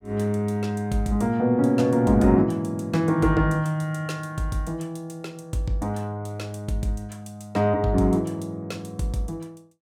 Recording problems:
none

